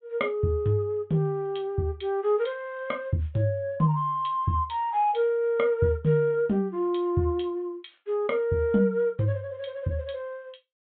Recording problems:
treble cut off; nothing above 4 kHz

